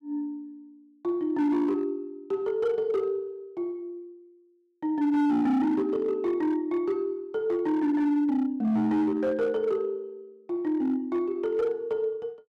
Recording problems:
distortion; hard clipping, signal-to-distortion ratio 12 dB

